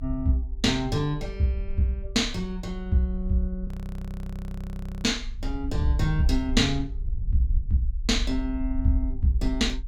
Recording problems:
rumble; below 52 Hz, strongest tone 30 Hz, SNR 7 dB
audio freezing; at 3.5 s for 1.5 s

